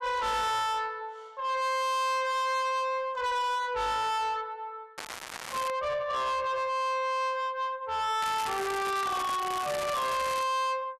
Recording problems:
distortion; soft clipping, signal-to-distortion ratio 6 dB
crackle; at 5 s and from 8 to 10 s; loose cable, SNR 9 dB

